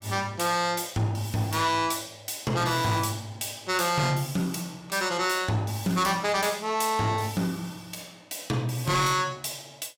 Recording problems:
distorted audio; soft clipping, signal-to-distortion ratio 10 dB

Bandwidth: 16.5 kHz